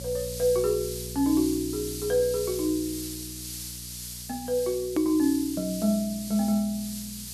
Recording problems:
hum; 60 Hz, harmonics up to 480 Hz, SNR 16 dB
background hiss; SNR 10 dB
hard cut with a click; at 5 s

